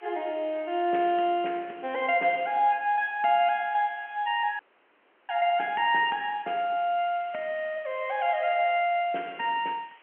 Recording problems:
telephone audio; 260 Hz to 3.1 kHz, G.711
background hiss; SNR 28 dB
audio freezing; at 4.5 s for 0.5 s

